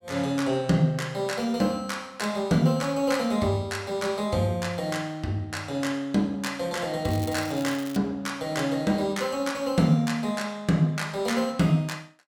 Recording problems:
crackle; at 7 s; loose cable, SNR 17 dB

